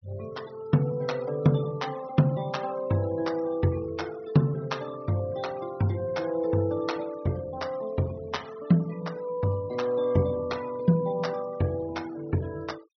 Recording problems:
treble missing; nothing above 6 kHz
noise reduction artefacts; signal-to-artefact ratio 20 dB

